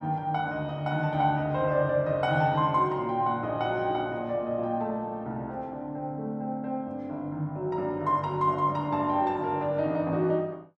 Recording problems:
none

